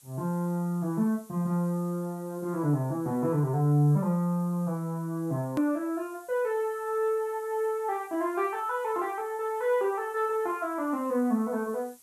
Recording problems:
hiss; SNR 25 dB
click at an edit; at 5.5 s

